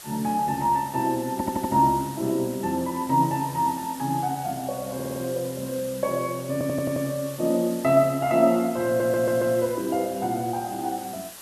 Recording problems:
hiss; slope 0 dB per octave, SNR 15 dB
audio stuttering; 4 times, first at 1.5 s

